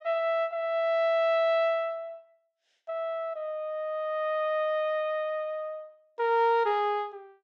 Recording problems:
none

